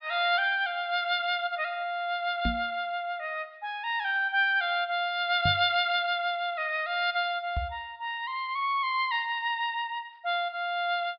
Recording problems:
low-pass filter; nothing above 5.5 kHz
microphone thump; at 2.5 s, at 5.5 s and at 7.5 s; peak +1 dB vs average level

